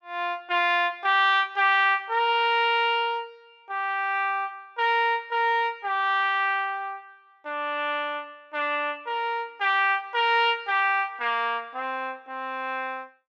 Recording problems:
none

